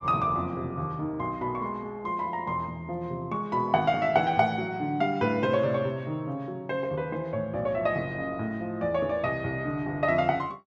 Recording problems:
none

